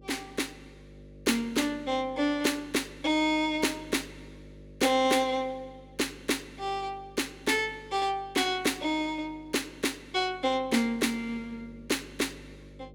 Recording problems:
electrical hum; 50 Hz, harmonics up to 600 Hz, SNR 22 dB

